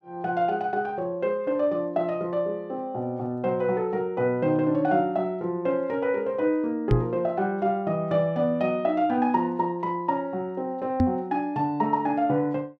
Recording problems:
microphone thump; at 7 s and at 11 s; peak +7 dB vs average level

